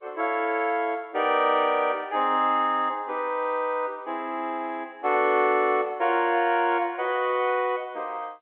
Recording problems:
phone line; 280 Hz to 3.4 kHz, G.711

